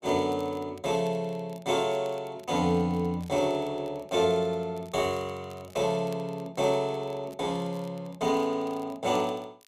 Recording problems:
crackling; vinyl, SNR 27 dB

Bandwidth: 14.5 kHz